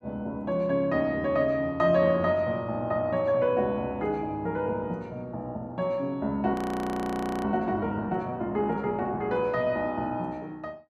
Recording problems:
frozen audio; at 6.5 s for 1 s

